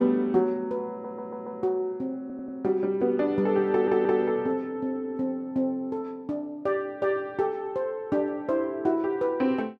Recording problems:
audio stuttering; at 1 s, at 2 s and at 3.5 s

